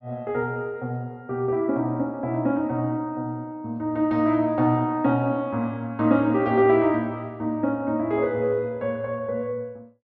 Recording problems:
none

